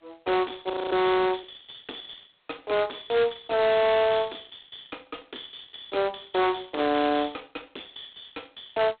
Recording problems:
telephone audio; 990 Hz to 3.6 kHz, G.726
distorted audio; hard clipping, signal-to-distortion ratio 7 dB
audio freezing; at 0.5 s

